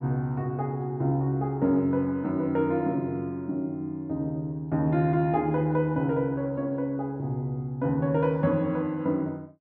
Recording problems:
none

